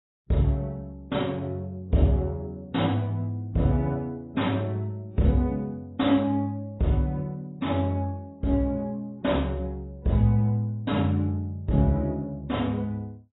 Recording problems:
lossy compression; AAC, log-spectral distance 2 dB, nothing above 3.9 kHz

